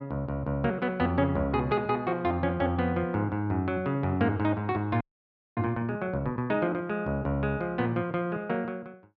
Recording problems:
frozen audio; at 5 s for 0.5 s

